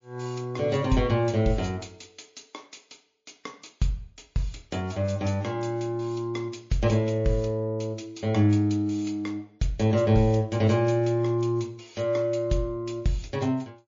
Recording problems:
codec artefacts; MP3, log-spectral distance 4 dB, nothing above 16 kHz

